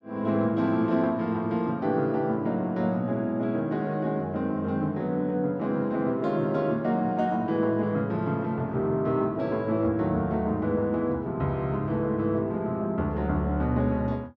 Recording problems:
none

